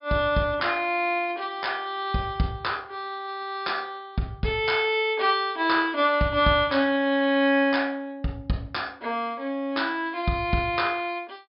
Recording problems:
treble missing; nothing above 5.5 kHz

